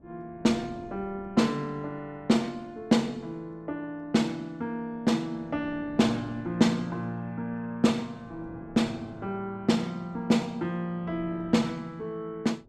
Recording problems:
wind on the microphone; below 390 Hz, SNR 22 dB

